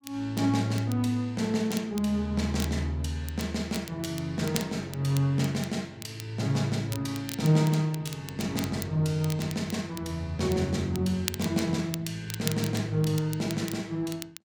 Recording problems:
crackle; vinyl, SNR 13 dB

